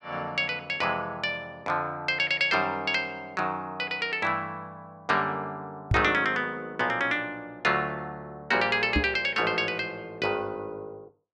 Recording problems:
microphone thump; at 6 s and at 9 s; peak +5 dB vs average level

